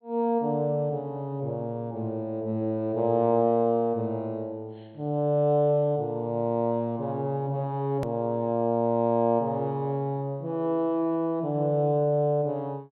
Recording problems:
treble missing; nothing above 4.2 kHz
edit click; at 8 s

